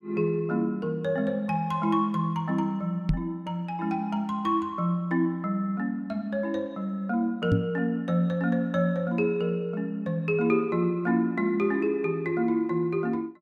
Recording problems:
microphone bump; at 3 s and at 7.5 s; peak +6 dB vs average level

